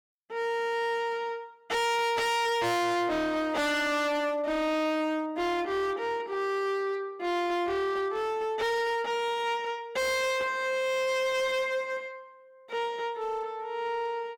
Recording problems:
distorted audio; hard clipping, signal-to-distortion ratio 6 dB

